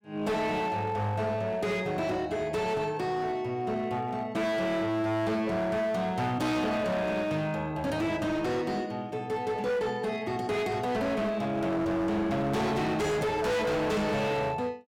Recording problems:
distortion; hard clipping, signal-to-distortion ratio 7 dB

